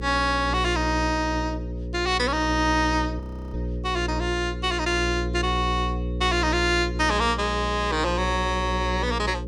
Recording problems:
hum; 60 Hz, harmonics up to 540 Hz, SNR 6 dB
frozen audio; at 3 s

